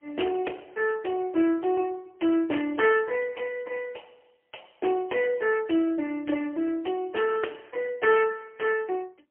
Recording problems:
telephone audio; 260 Hz to 3.1 kHz, AMR-NB, then MP3

